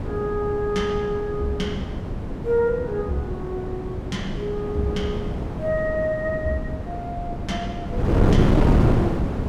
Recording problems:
wind noise; below 310 Hz, SNR -1 dB

